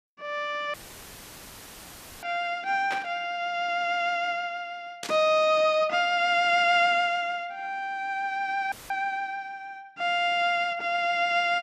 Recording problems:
dropout; at 0.5 s for 1.5 s and at 8.5 s; filled with static
static burst; at 3 s and at 5 s; peak -4 dB vs average level

